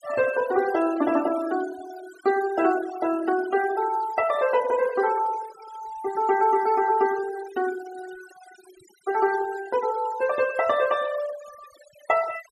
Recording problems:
denoising artefacts; signal-to-artefact ratio 17 dB

